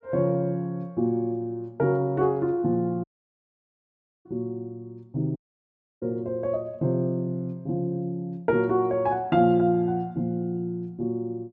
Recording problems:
audio cutting out; at 3 s for 1 s and at 5.5 s for 0.5 s

